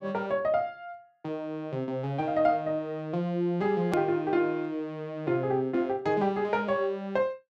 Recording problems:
click at an edit; at 4 s

